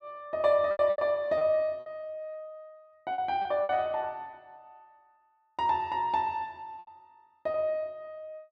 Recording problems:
packet loss; 8% of the sound replaced, filled with repeated pitch periods

